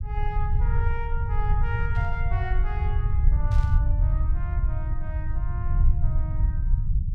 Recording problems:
low-frequency rumble; below 82 Hz, SNR -11 dB
burst of static; at 2 s and at 3.5 s; peak -7 dB vs average level

